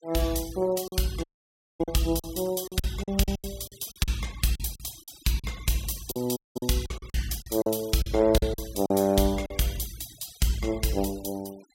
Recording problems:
noise reduction artefacts; signal-to-artefact ratio 19 dB
lost packets; 10% of the sound replaced, filled with silence
audio cutting out; at 1 s for 0.5 s and at 6.5 s

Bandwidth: 16 kHz